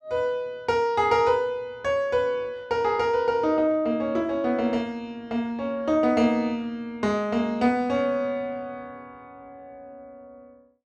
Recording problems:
none

